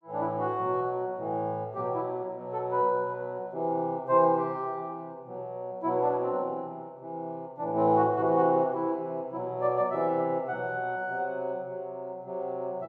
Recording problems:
none

